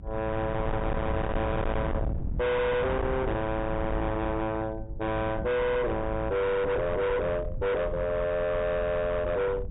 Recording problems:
treble missing; nothing above 4 kHz
distortion; hard clipping, signal-to-distortion ratio 6 dB
rumble; below 370 Hz, SNR 6 dB

